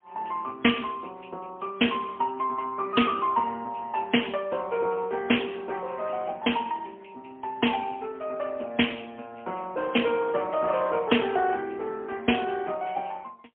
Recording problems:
phone line; 260 Hz to 3.2 kHz, AMR-NB, then MP3

